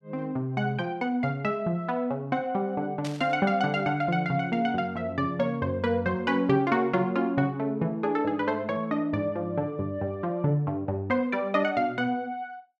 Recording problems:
burst of static; at 3 s; peak -8 dB vs average level

